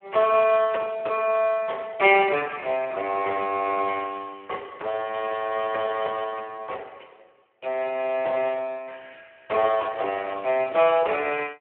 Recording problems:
phone line; 340 Hz to 3.2 kHz, Speex

